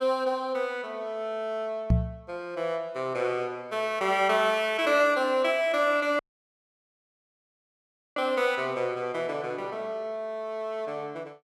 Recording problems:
microphone bump; at 2 s; peak +8 dB vs average level
dropout; at 6 s for 2 s

